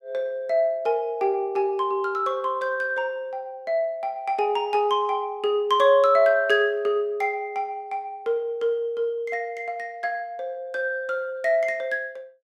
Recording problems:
none

